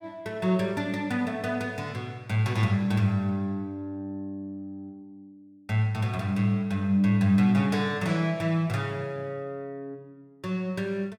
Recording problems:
none

